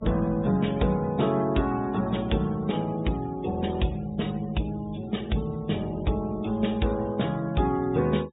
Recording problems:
treble missing; nothing above 4 kHz
denoising artefacts; signal-to-artefact ratio 22 dB

